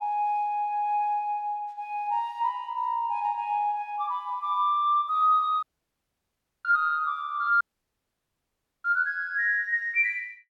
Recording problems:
audio cutting out; at 5.5 s for 1 s and at 7.5 s for 1 s

